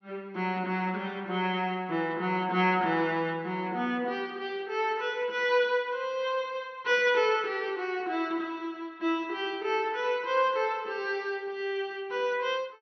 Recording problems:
low-pass filter; nothing above 5.9 kHz

